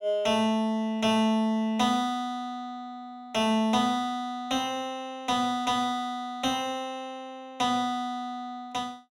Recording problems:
none

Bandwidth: 16.5 kHz